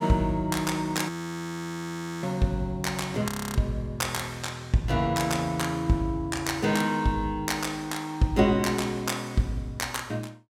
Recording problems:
audio freezing; at 1 s for 1 s and at 3.5 s

